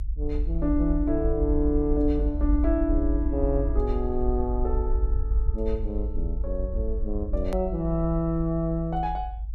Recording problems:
rumble; below 54 Hz, SNR 2 dB
edit click; at 7.5 s

